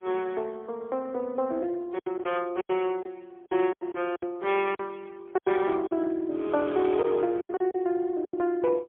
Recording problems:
telephone audio; 300 Hz to 3.3 kHz, AMR-NB, then MP3
lost packets; 9% of the sound replaced, filled with silence

